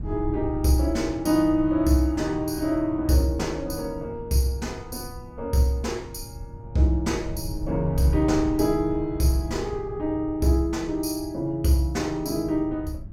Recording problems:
wind noise; below 110 Hz, SNR 13 dB

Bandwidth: 17.5 kHz